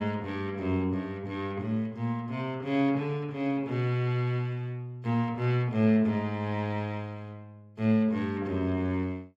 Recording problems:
none

